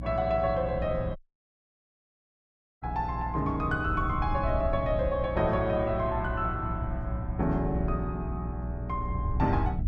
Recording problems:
hum; 60 Hz, harmonics up to 300 Hz, SNR 7 dB
wind noise; below 100 Hz, SNR 8 dB
dropout; at 1 s for 1.5 s

